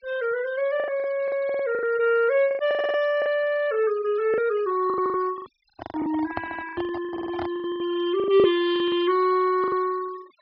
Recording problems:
low-pass filter; nothing above 5.5 kHz
noise reduction artefacts; signal-to-artefact ratio 21 dB
packet loss; 15% of the sound replaced, filled with the last packet
stutter; 4 times, first at 1.5 s
handling noise; from 6 to 7.5 s; peak -2 dB vs average level

